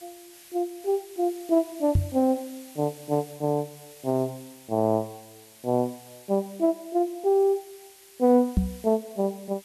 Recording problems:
background hiss; slope +1 dB per octave, SNR 22 dB
knock on the microphone; at 2 s and at 8.5 s; peak +7 dB vs average level

